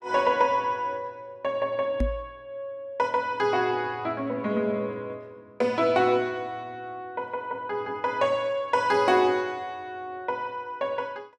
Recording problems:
microphone bump; at 2 s; peak +3 dB vs average level

